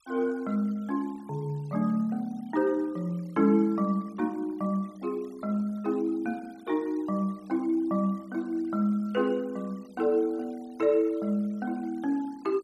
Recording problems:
noise reduction artefacts; signal-to-artefact ratio 28 dB

